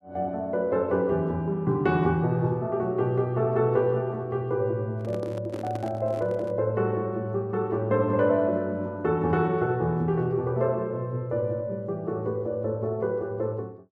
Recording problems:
microphone handling noise; from 5 to 6.5 s; peak -6 dB vs average level

